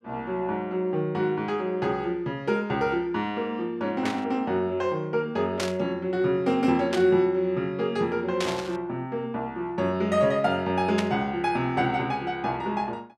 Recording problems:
burst of static; 5 times, first at 4 s; peak 0 dB vs average level

